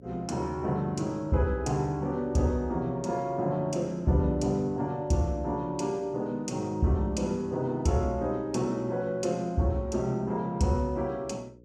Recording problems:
hum; 60 Hz, harmonics up to 540 Hz, SNR 26 dB

